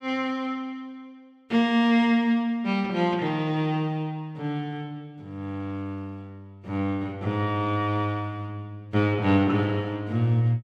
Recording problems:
none

